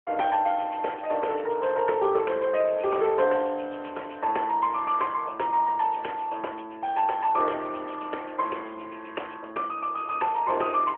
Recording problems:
telephone audio; 320 Hz to 3.2 kHz, AMR-NB

